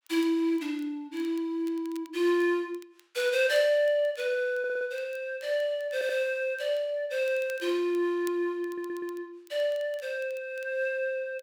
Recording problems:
crackle; vinyl, SNR 28 dB
audio stuttering; at 4.5 s, at 6 s and at 8.5 s

